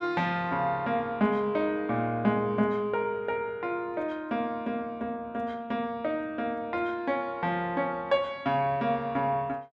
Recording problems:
none

